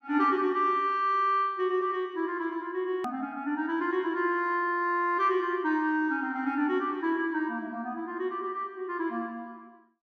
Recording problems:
click at an edit; at 3 s

